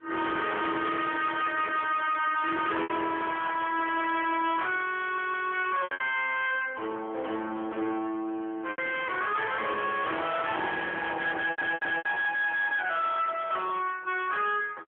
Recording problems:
telephone audio; 260 Hz to 3.6 kHz, AMR-NB
distorted audio; hard clipping, uneven, signal-to-distortion ratio 6 dB
packet loss; 3% of the sound replaced, filled with repeated pitch periods
static burst; at 2 s and at 4 s; peak -13 dB vs average level
audio stuttering; at 5 s and at 11 s

